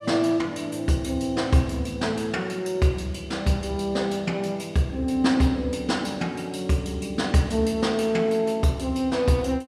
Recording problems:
none

